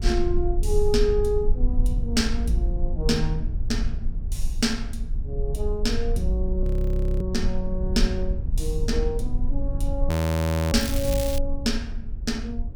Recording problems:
rumble; below 64 Hz, SNR 0 dB
frozen audio; at 6.5 s for 0.5 s and at 10 s for 0.5 s
crackling; at 11 s; loose cable, SNR 7 dB

